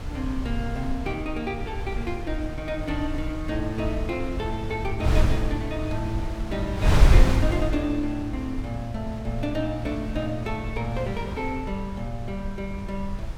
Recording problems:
hum; 50 Hz, harmonics up to 350 Hz, SNR 15 dB
wind noise; below 90 Hz, SNR -1 dB

